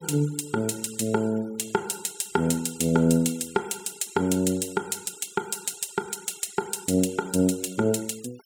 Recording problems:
noise reduction artefacts; signal-to-artefact ratio 21 dB

